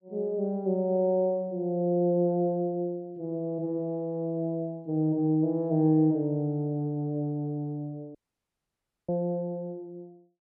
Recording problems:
audio cutting out; at 8 s for 1 s

